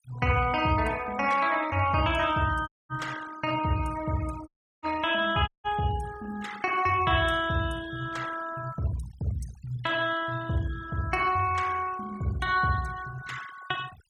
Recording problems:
denoising artefacts; signal-to-artefact ratio 17 dB
audio cutting out; at 2.5 s, at 4.5 s and at 5.5 s

